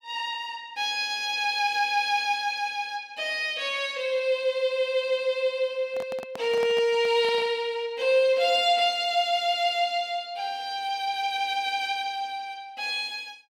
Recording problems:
microphone handling noise; from 6 to 7.5 s; peak -8 dB vs average level

